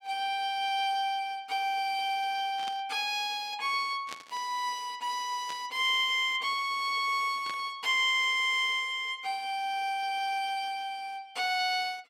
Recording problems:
static burst; 4 times, first at 2.5 s; peak -7 dB vs average level

